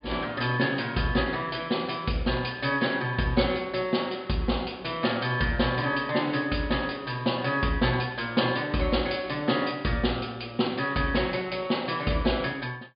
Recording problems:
low-pass filter; nothing above 5 kHz

